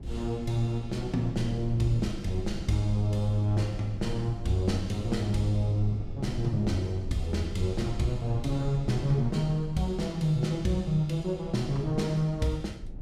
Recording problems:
low-frequency rumble; below 94 Hz, SNR 12 dB

